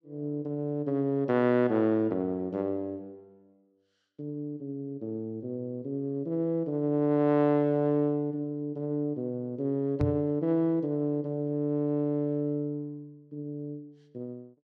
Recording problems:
microphone thump; at 10 s; peak +3 dB vs average level

